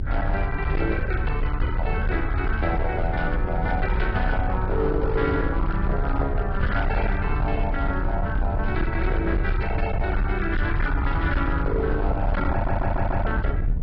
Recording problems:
treble cut off; nothing above 5.5 kHz
lossy codec; AAC, log-spectral distance 2 dB
distortion; hard clipping, uneven, signal-to-distortion ratio 11 dB
rumble; below 82 Hz, SNR 0 dB
wind on the microphone; below 180 Hz, SNR 11 dB
stutter; at 13 s

